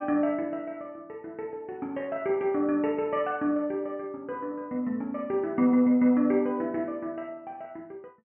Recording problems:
treble missing; nothing above 3.1 kHz

